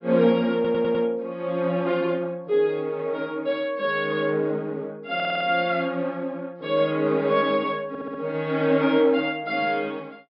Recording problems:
low-pass filter; nothing above 5.4 kHz
audio stuttering; at 0.5 s, at 5 s and at 8 s

